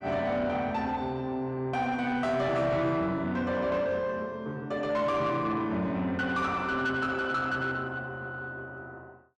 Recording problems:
distorted audio; soft clipping, signal-to-distortion ratio 11 dB

